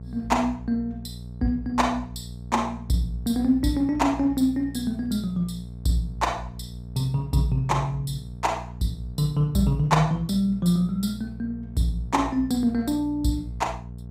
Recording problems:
hum; 60 Hz, harmonics up to 480 Hz, SNR 13 dB

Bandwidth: 15.5 kHz